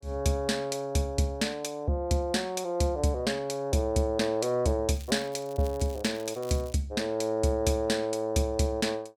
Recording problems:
crackle; from 5 to 7 s; loose cable, SNR 22 dB

